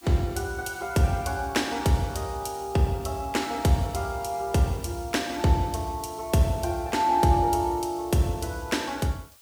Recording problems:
background hiss; slope +2 dB per octave, SNR 24 dB

